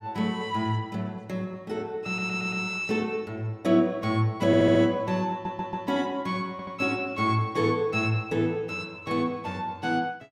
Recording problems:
audio stuttering; 4 times, first at 2 s

